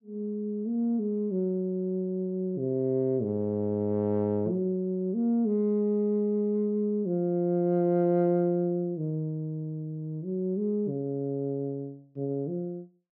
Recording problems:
none

